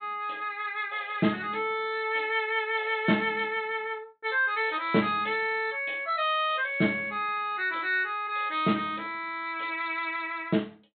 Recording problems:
treble missing; nothing above 4 kHz

